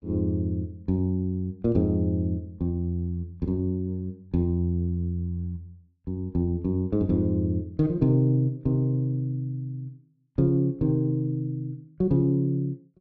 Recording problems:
none

